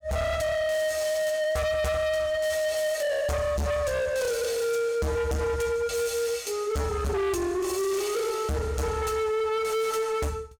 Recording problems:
distorted audio; hard clipping, signal-to-distortion ratio 7 dB

